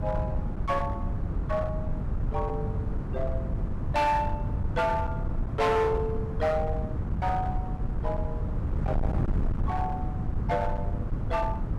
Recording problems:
distortion; hard clipping, signal-to-distortion ratio 11 dB
wind on the microphone; below 150 Hz, SNR 1 dB

